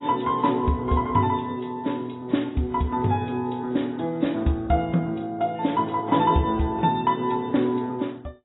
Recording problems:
codec artefacts; AAC, log-spectral distance 3 dB, nothing above 3.8 kHz

